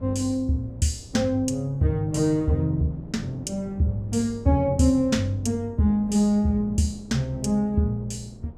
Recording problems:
wind noise; below 300 Hz, SNR 22 dB

